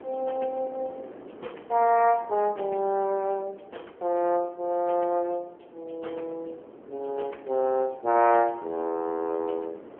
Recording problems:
telephone audio; 280 Hz to 2.9 kHz, AMR-NB
wind noise; below 600 Hz, SNR 20 dB

